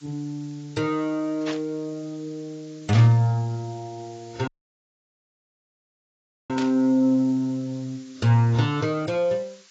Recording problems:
codec artefacts; AAC, log-spectral distance 6 dB, nothing above 16 kHz
hiss; SNR 27 dB
burst of static; at 1.5 s, at 3 s and at 6.5 s; peak -6 dB vs average level
dropout; at 4.5 s for 2 s

